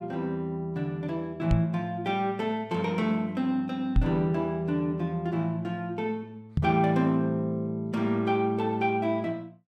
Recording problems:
microphone bump; at 1.5 s, at 4 s and at 6.5 s; peak +7 dB vs average level

